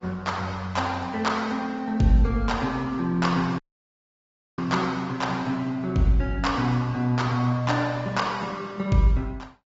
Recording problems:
treble cut off; nothing above 7.6 kHz
lossy codec; Opus, log-spectral distance 3 dB
audio cutting out; at 3.5 s for 1 s

